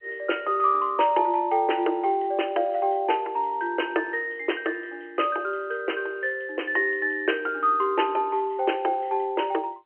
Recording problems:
telephone audio; 300 Hz to 3.2 kHz, G.711

